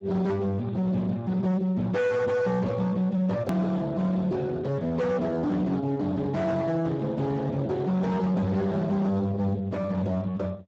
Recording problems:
lossy codec; Speex, log-spectral distance 3 dB, nothing above 17.1 kHz
distortion; hard clipping, signal-to-distortion ratio 7 dB
hard cut with a click; at 3.5 s

